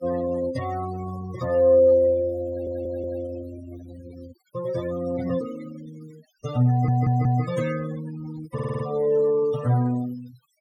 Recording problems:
noise reduction artefacts; signal-to-artefact ratio 17 dB
audio stuttering; at 2.5 s, at 6.5 s and at 8.5 s

